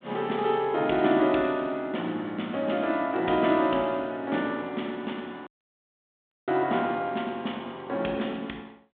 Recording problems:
phone line; 150 Hz to 3.7 kHz, G.726
dropout; at 5.5 s for 1 s

